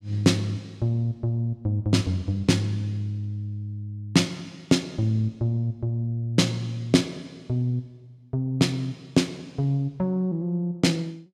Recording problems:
none

